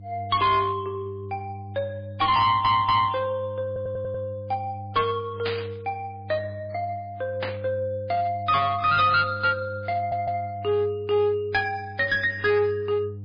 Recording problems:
codec artefacts; MP3, log-spectral distance 2 dB, nothing above 5 kHz
distorted audio; hard clipping, uneven, signal-to-distortion ratio 9 dB
mains hum; 50 Hz, harmonics up to 300 Hz, SNR 14 dB
audio stuttering; at 2.5 s, at 3.5 s and at 10 s
burst of static; at 5.5 s and at 7.5 s; peak -2 dB vs average level

